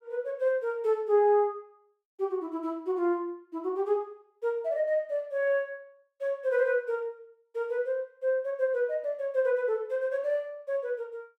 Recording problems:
none

